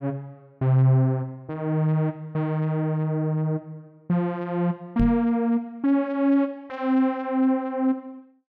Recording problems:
knock on the microphone; at 5 s; peak +2 dB vs average level

